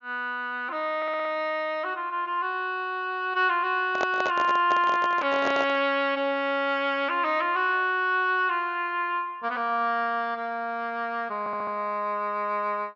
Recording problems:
treble missing; nothing above 7 kHz
audio stuttering; at 1 s and at 11 s
handling noise; from 4 to 6 s; peak 0 dB vs average level

